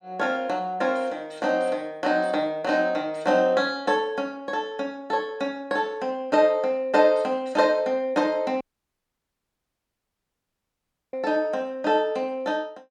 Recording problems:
audio cutting out; at 8.5 s for 2.5 s

